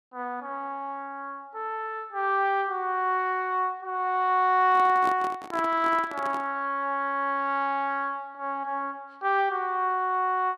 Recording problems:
microphone handling noise; from 4.5 to 6.5 s; peak -4 dB vs average level

